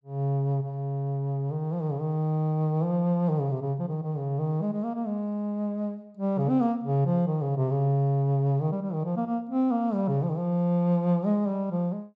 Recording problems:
none

